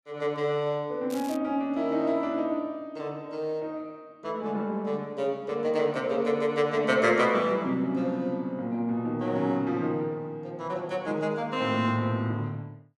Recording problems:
crackle; at 1 s; loose cable, SNR 18 dB

